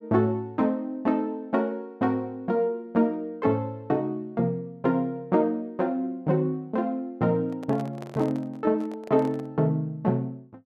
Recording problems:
microphone handling noise; from 7.5 to 9.5 s; peak -9 dB vs average level

